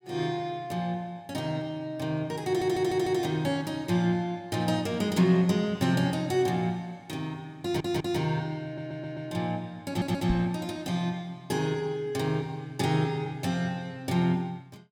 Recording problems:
audio stuttering; 4 times, first at 2.5 s
knock on the microphone; at 10 s; peak +2 dB vs average level

